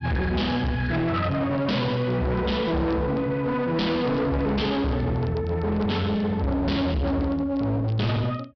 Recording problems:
low-pass filter; nothing above 5.5 kHz
distortion; hard clipping, signal-to-distortion ratio 7 dB
crackle; vinyl, SNR 29 dB

